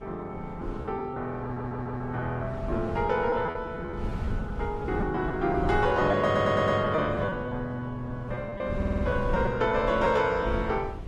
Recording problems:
lossy compression; Opus, log-spectral distance 2 dB, nothing above 11.6 kHz
wind on the microphone; below 140 Hz, SNR 10 dB
packet loss; 8% of the sound replaced, filled with repeated pitch periods
stutter; at 1.5 s, at 6.5 s and at 9 s

